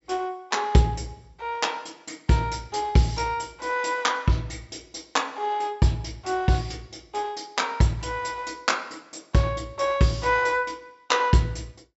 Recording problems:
treble cut off; nothing above 8 kHz

